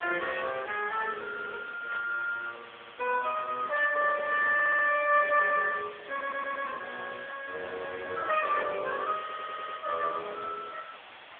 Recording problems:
telephone audio; 280 Hz to 3.1 kHz, AMR-NB
background hiss; SNR 18 dB
static burst; at 2 s, at 4 s and at 8.5 s; peak -9 dB vs average level
audio stuttering; 4 times, first at 2.5 s

